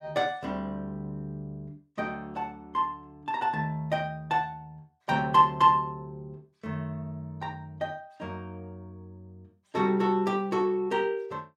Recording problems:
none

